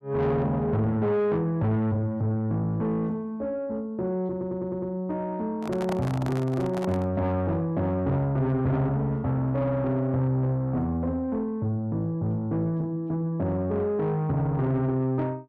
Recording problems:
distortion; soft clipping, signal-to-distortion ratio 11 dB
audio stuttering; at 4.5 s
handling noise; from 5.5 to 7 s; peak -2 dB vs average level

